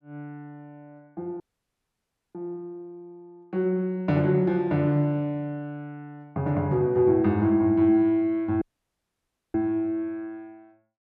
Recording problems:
dropout; at 1.5 s for 1 s and at 8.5 s for 1 s

